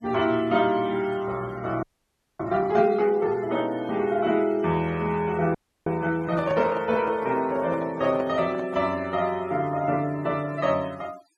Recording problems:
denoising artefacts; signal-to-artefact ratio 22 dB
frozen audio; at 2 s for 0.5 s and at 5.5 s
microphone handling noise; from 6 to 9 s; peak -5 dB vs average level

